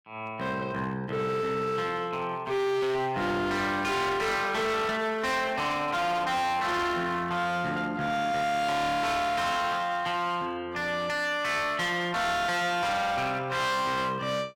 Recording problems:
distortion; hard clipping, uneven, signal-to-distortion ratio 7 dB

